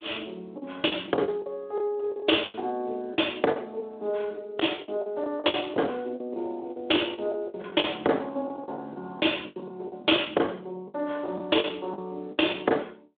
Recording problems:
telephone audio; 320 Hz to 3.6 kHz, Speex
lost packets; 14% of the sound replaced, filled with the last packet

